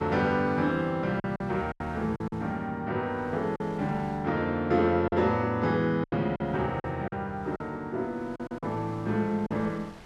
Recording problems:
wind noise; below 1.7 kHz, SNR 24 dB
packet loss; 7% of the sound replaced, filled with silence
stutter; at 8.5 s

